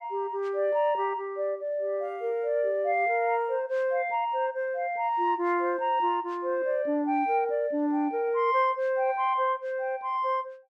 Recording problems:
none

